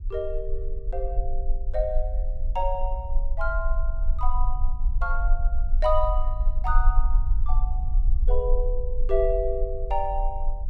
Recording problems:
rumble; below 40 Hz, strongest tone 20 Hz, SNR -2 dB

